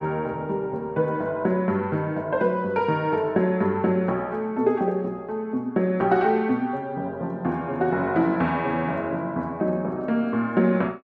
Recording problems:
none

